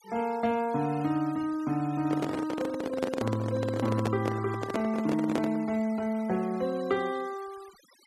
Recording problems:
denoising artefacts; signal-to-artefact ratio 20 dB
handling noise; from 2 to 5.5 s; peak +3 dB vs average level

